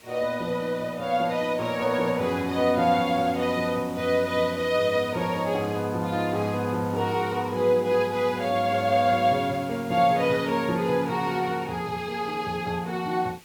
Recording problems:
background hiss; SNR 22 dB

